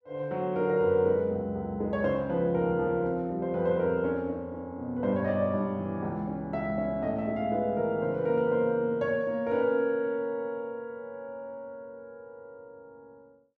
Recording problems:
none

